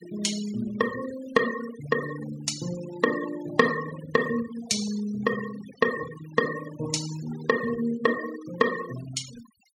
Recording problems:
noise reduction artefacts; signal-to-artefact ratio 13 dB

